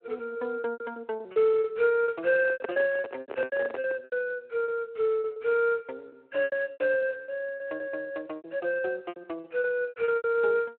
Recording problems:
telephone audio; 320 Hz to 3.3 kHz, Speex
packet loss; 15% of the sound replaced, filled with repeated pitch periods
microphone handling noise; from 2.5 to 4 s; peak 0 dB vs average level

